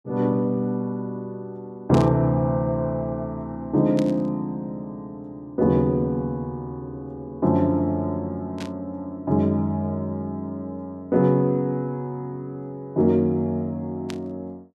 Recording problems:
static burst; 4 times, first at 2 s; peak -7 dB vs average level

